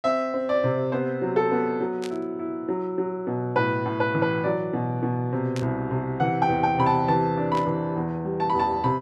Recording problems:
static burst; at 2 s, at 5.5 s and at 7.5 s; peak -8 dB vs average level

